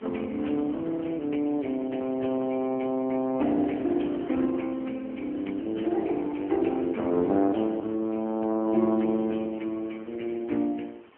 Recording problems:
phone line; 190 Hz to 3.5 kHz, AMR-NB
hiss; SNR 28 dB

